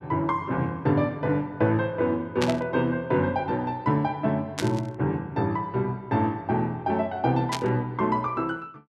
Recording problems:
static burst; at 2.5 s, at 4.5 s and at 7.5 s; peak +1 dB vs average level

